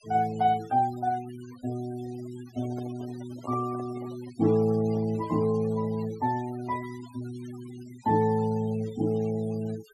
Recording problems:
noise reduction artefacts; signal-to-artefact ratio 20 dB
microphone handling noise; from 2.5 to 5.5 s; peak -9 dB vs average level

